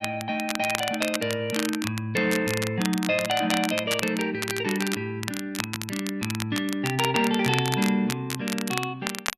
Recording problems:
crackle; vinyl, SNR 6 dB

